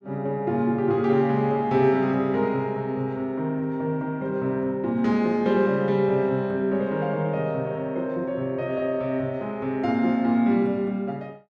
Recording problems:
none

